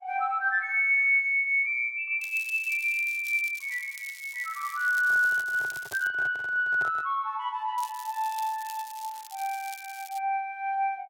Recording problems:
codec artefacts; Opus, log-spectral distance 3 dB
crackle; from 2 to 6 s and from 8 to 10 s; loose cable, SNR 19 dB
microphone handling noise; from 5 to 7 s; peak -12 dB vs average level

